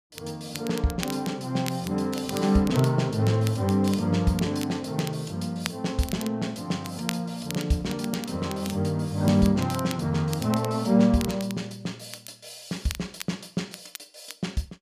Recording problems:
crackling; vinyl, SNR 14 dB

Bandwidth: 14.5 kHz